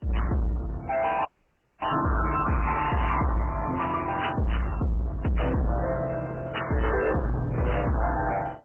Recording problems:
lossy compression; MP3, then Opus, log-spectral distance 5 dB, nothing above 3 kHz
distortion; soft clipping, signal-to-distortion ratio 6 dB
audio cutting out; at 1.5 s for 0.5 s

